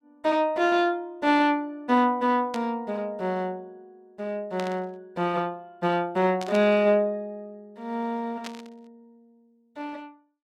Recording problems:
static burst; 4 times, first at 2.5 s; peak -7 dB vs average level

